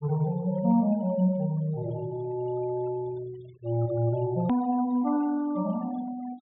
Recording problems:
treble missing; nothing above 4 kHz
noise reduction artefacts; signal-to-artefact ratio 23 dB
hard cut with a click; at 4.5 s

